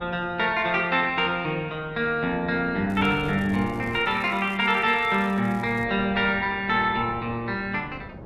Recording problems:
wind on the microphone; below 500 Hz, SNR 18 dB
crackle; from 3 to 6 s; loose cable, SNR 29 dB

